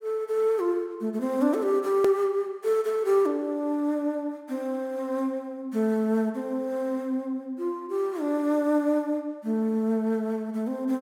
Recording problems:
edit click; at 2 s

